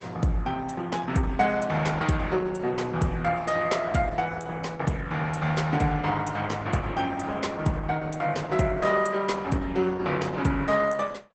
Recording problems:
lossy codec; Opus, log-spectral distance 3 dB, nothing above 8.2 kHz

